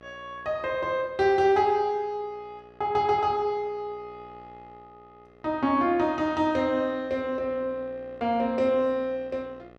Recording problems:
hum; 60 Hz, harmonics up to 2.6 kHz, SNR 26 dB

